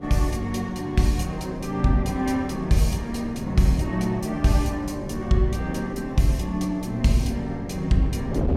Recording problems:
wind noise; below 340 Hz, SNR 12 dB

